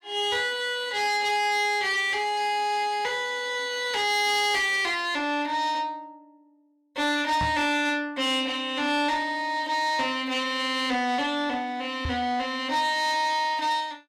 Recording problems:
distorted audio; soft clipping, signal-to-distortion ratio 11 dB
knock on the microphone; at 7.5 s and at 12 s; peak -2 dB vs average level

